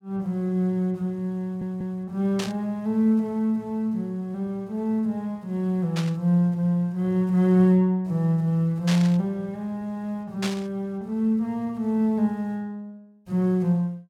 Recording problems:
stutter; at 1.5 s
static burst; 4 times, first at 2.5 s; peak -2 dB vs average level

